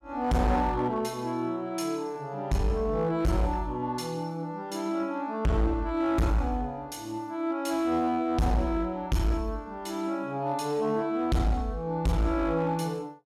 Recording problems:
distortion; hard clipping, uneven, signal-to-distortion ratio 6 dB

